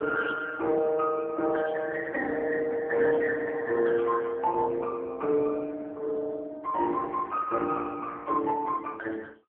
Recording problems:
telephone audio; 260 Hz to 3.2 kHz, AMR-NB

